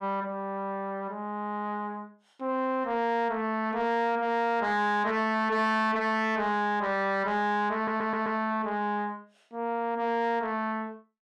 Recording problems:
distorted audio; soft clipping, signal-to-distortion ratio 11 dB
stutter; at 8 s

